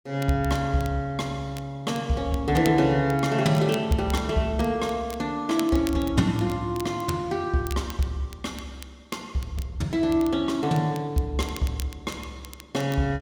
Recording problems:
crackle; vinyl, SNR 19 dB

